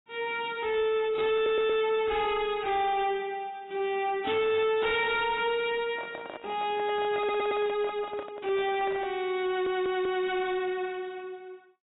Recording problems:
lossy codec; AAC, log-spectral distance 3 dB, nothing above 3.8 kHz
distorted audio; soft clipping, signal-to-distortion ratio 7 dB
stutter; at 1.5 s, at 7 s and at 9.5 s
microphone handling noise; from 6 to 9 s; peak -6 dB vs average level

